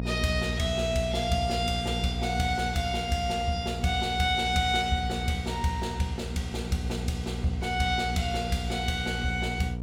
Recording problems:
hum; 60 Hz, harmonics up to 720 Hz, SNR 6 dB

